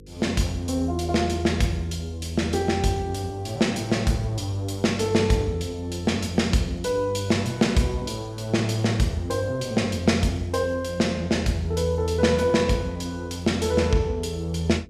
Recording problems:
hum; 50 Hz, harmonics up to 500 Hz, SNR 23 dB

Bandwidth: 14.5 kHz